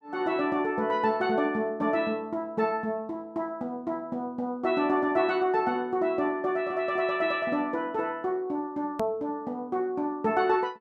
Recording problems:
edit click; at 9 s

